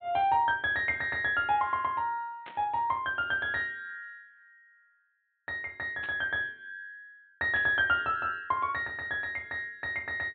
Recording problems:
treble missing; nothing above 4 kHz
static burst; at 2.5 s, at 6 s and at 7.5 s; peak -12 dB vs average level

